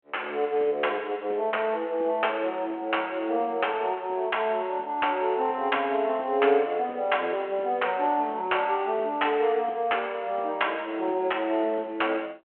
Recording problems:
phone line; 280 Hz to 3.3 kHz, G.726

